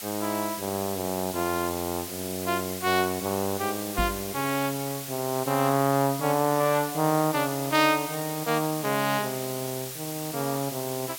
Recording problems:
background hiss; slope +2 dB per octave, SNR 8 dB
knock on the microphone; at 4 s; peak +1 dB vs average level

